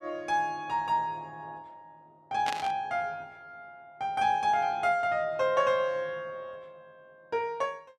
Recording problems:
static burst; at 2.5 s; peak -1 dB vs average level

